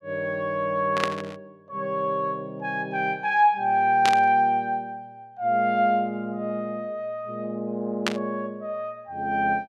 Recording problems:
burst of static; at 1 s, at 4 s and at 8 s; peak +4 dB vs average level

